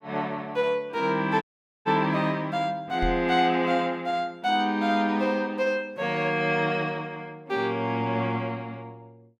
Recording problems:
dropout; at 1.5 s
microphone bump; at 3 s; peak -2 dB vs average level

